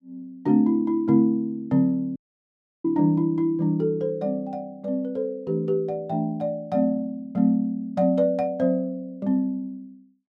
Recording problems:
dropout; at 2 s for 0.5 s

